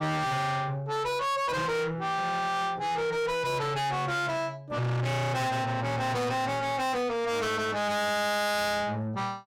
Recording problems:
distortion; soft clipping, signal-to-distortion ratio 7 dB

